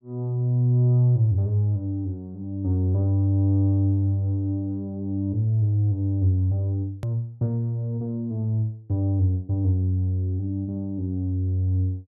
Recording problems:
edit click; at 7 s

